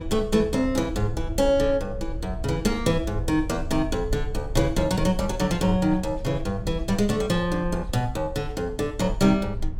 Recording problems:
rumble; below 72 Hz, SNR 10 dB

